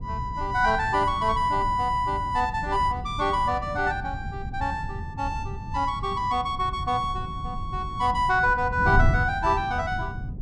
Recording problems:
wind on the microphone; below 120 Hz, SNR 8 dB

